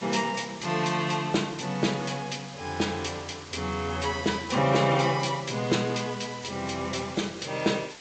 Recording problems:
codec artefacts; MP3, then G.722, log-spectral distance 7 dB, nothing above 7.8 kHz
hiss; slope 0 dB per octave, SNR 16 dB

